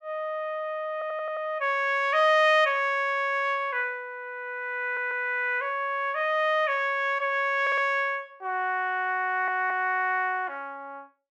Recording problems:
audio stuttering; 4 times, first at 1 s

